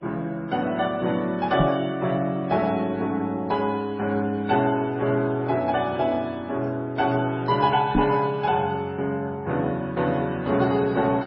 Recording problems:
codec artefacts; MP2, then MP3, log-spectral distance 2 dB, nothing above 5.2 kHz
knock on the microphone; at 1.5 s and at 8 s; peak +6 dB vs average level

